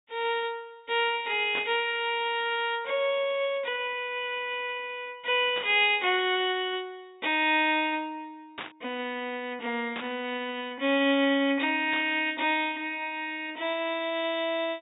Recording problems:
treble missing; nothing above 4 kHz
burst of static; 5 times, first at 1.5 s; peak -4 dB vs average level

